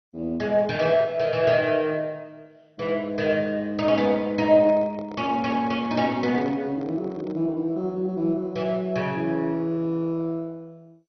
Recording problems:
codec artefacts; MP2, log-spectral distance 2 dB, nothing above 5.8 kHz
microphone handling noise; from 4.5 to 7.5 s; peak -10 dB vs average level

